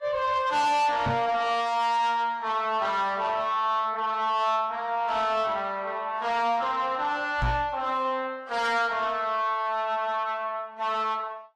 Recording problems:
codec artefacts; Vorbis, log-spectral distance 2 dB, nothing above 12.3 kHz
distorted audio; soft clipping, signal-to-distortion ratio 11 dB
knock on the microphone; at 1 s and at 7.5 s; peak +2 dB vs average level

